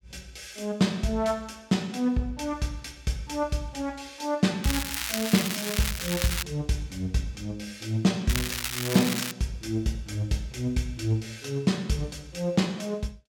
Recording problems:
crackling; from 4.5 to 6.5 s and from 8.5 to 9.5 s; loose cable, SNR 2 dB

